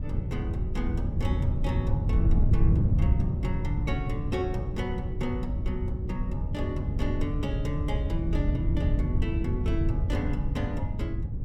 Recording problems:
wind noise; below 120 Hz, SNR -5 dB

